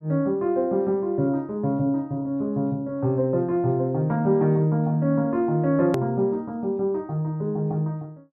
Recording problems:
click at an edit; at 6 s

